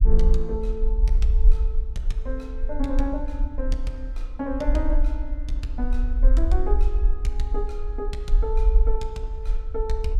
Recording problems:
rumble; below 46 Hz, SNR -6 dB

